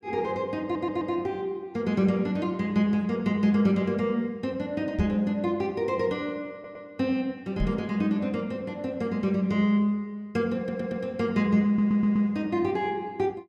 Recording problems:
audio stuttering; 4 times, first at 0.5 s
microphone bump; at 5 s and at 7.5 s; peak +1 dB vs average level

